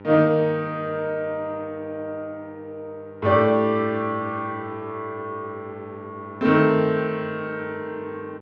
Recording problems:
hum; 50 Hz, harmonics up to 2.3 kHz, SNR 19 dB

